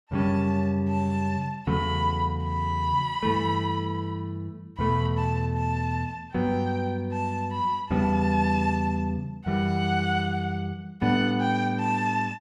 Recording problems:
none

